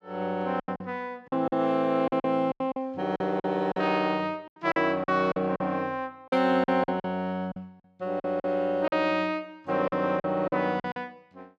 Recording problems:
lost packets; 12% of the sound replaced, filled with silence

